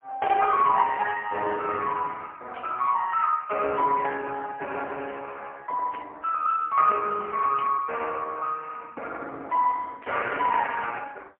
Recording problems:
telephone audio; 340 Hz to 2.7 kHz, AMR-NB, then MP3
burst of static; 4 times, first at 2.5 s; peak -10 dB vs average level

